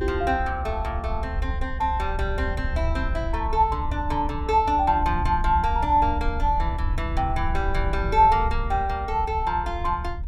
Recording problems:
rumble; below 72 Hz, SNR 5 dB

